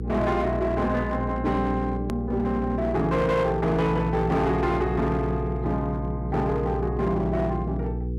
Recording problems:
distortion; hard clipping, uneven, signal-to-distortion ratio 12 dB
electrical hum; 60 Hz, harmonics up to 480 Hz, SNR 6 dB
click at an edit; at 2 s

